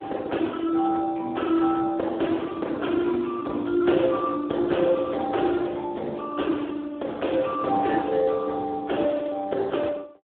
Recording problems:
phone line; 260 Hz to 3.6 kHz, Speex

